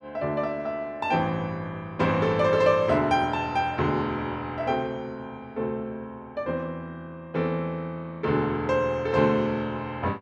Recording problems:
none

